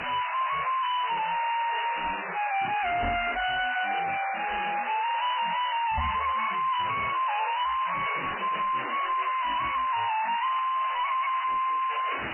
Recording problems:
lossy compression; MP3, log-spectral distance 19 dB, nothing above 3 kHz
distorted audio; hard clipping, signal-to-distortion ratio 3 dB
background hiss; SNR 3 dB
knock on the microphone; at 3 s and at 6 s; peak +7 dB vs average level

